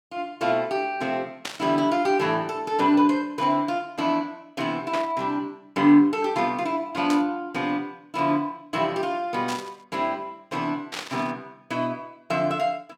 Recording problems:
burst of static; 5 times, first at 1.5 s; peak -2 dB vs average level

